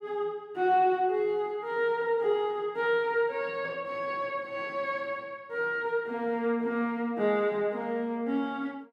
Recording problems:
none

